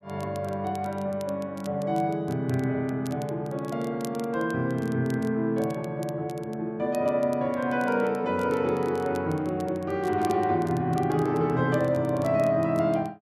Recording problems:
crackling; vinyl, SNR 24 dB

